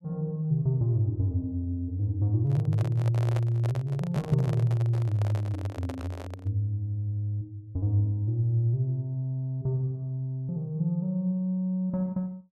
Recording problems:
handling noise; from 2.5 to 6.5 s; peak -5 dB vs average level

